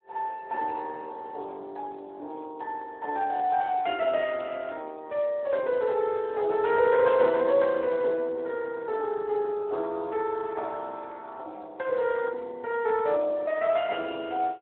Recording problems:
phone line; 300 Hz to 3.6 kHz, Speex

